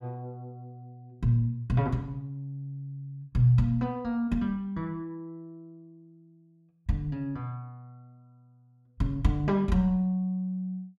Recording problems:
none

